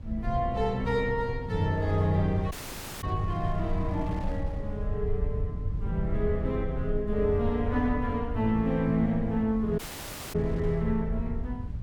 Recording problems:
hum; 60 Hz, harmonics up to 900 Hz, SNR 22 dB
rumble; below 84 Hz, SNR 7 dB
wind on the microphone; below 390 Hz, SNR 20 dB
audio cutting out; at 2.5 s for 0.5 s and at 10 s for 0.5 s

